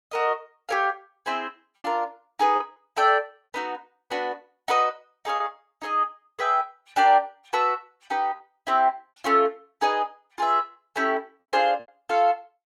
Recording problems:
packet loss; 3% of the sound replaced, filled with repeated pitch periods

